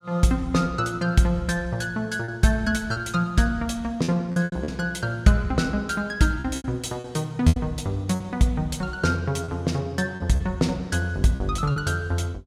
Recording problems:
lost packets; 6% of the sound replaced, filled with repeated pitch periods

